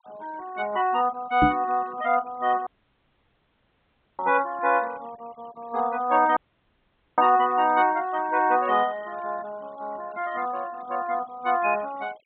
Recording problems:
treble cut off; nothing above 4 kHz
noise reduction artefacts; signal-to-artefact ratio 25 dB
microphone thump; at 1.5 s; peak +5 dB vs average level
audio cutting out; at 2.5 s for 1.5 s and at 6.5 s for 1 s

